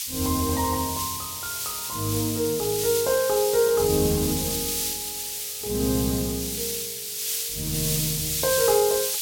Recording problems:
hiss; SNR 2 dB

